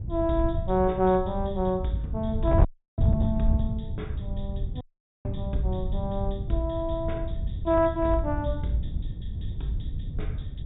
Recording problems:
treble cut off; nothing above 4 kHz
distortion; hard clipping, uneven, signal-to-distortion ratio 11 dB
wind noise; below 110 Hz, SNR 3 dB
dropout; at 2.5 s and at 5 s

